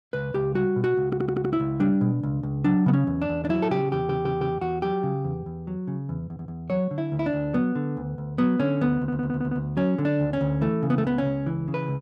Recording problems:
audio stuttering; 4 times, first at 1 s

